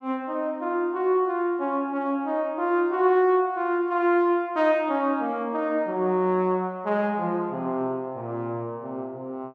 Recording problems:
none

